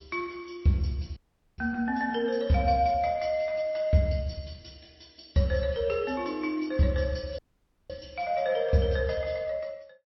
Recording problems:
lossy compression; MP3, log-spectral distance 4 dB, nothing above 5.5 kHz
audio cutting out; at 1 s and at 7.5 s for 0.5 s

